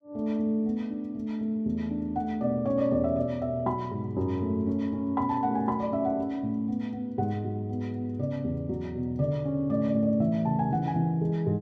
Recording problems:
none

